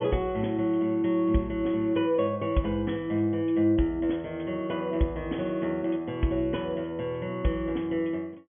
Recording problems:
treble cut off; nothing above 3.4 kHz

